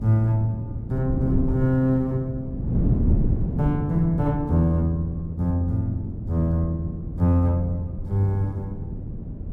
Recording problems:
wind on the microphone; below 190 Hz, SNR 5 dB

